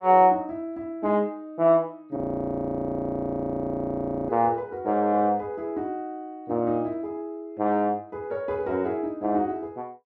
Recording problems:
frozen audio; at 2 s for 2 s

